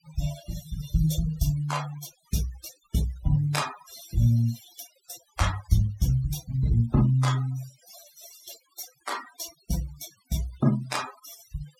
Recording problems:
denoising artefacts; signal-to-artefact ratio 13 dB

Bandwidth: 17 kHz